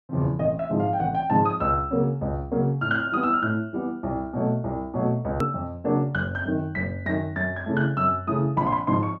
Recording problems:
hard cut with a click; at 5.5 s

